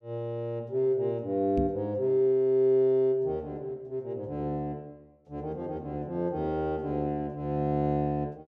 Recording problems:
microphone thump; at 1.5 s; peak +1 dB vs average level

